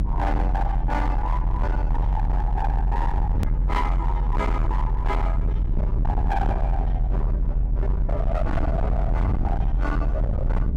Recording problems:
distortion; hard clipping, signal-to-distortion ratio 7 dB
low-frequency rumble; below 74 Hz, strongest tone 46 Hz, SNR -5 dB
edit click; at 3.5 s

